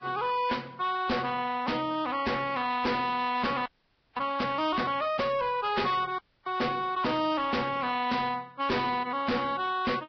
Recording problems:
lossy codec; Vorbis, log-spectral distance 4 dB, nothing above 5.3 kHz
distortion; hard clipping, signal-to-distortion ratio 7 dB
audio freezing; at 3.5 s for 0.5 s and at 6 s

